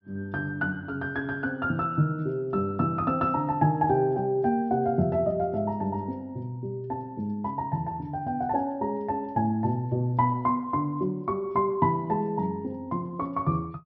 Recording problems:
treble missing; nothing above 5.6 kHz

